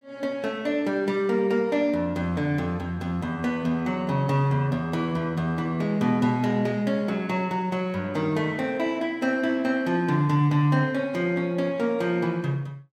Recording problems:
none

